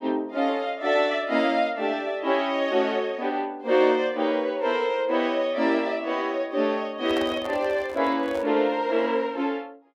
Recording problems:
handling noise; from 7 to 8.5 s; peak -6 dB vs average level

